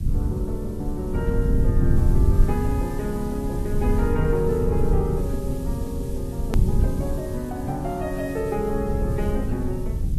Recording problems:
lossy codec; AAC, log-spectral distance 2 dB, nothing above 13.1 kHz
hiss; SNR 20 dB
rumble; below 100 Hz, SNR -1 dB
click at an edit; at 6.5 s

